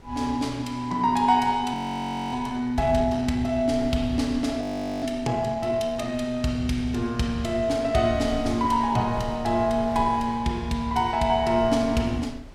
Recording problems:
wind noise; below 180 Hz, SNR 18 dB
frozen audio; at 1.5 s for 0.5 s and at 4.5 s

